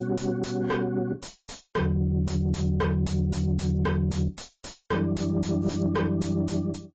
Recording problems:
lossy codec; AAC, log-spectral distance 3 dB, nothing above 7.6 kHz
distorted audio; soft clipping, signal-to-distortion ratio 5 dB

